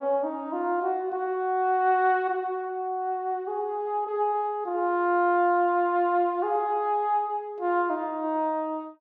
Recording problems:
none

